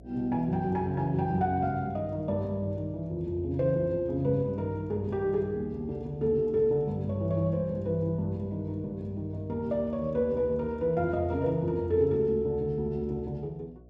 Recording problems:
electrical hum; 60 Hz, harmonics up to 720 Hz, SNR 22 dB

